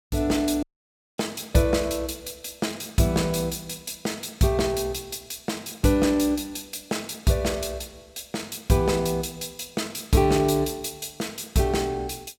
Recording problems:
dropout; at 0.5 s for 0.5 s

